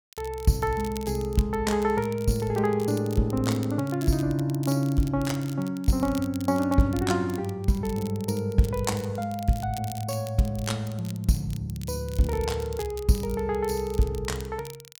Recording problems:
crackling; vinyl, SNR 19 dB

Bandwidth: 18.5 kHz